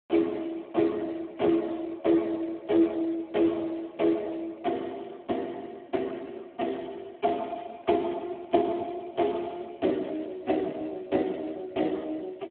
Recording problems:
telephone audio; 220 Hz to 3.7 kHz, Speex

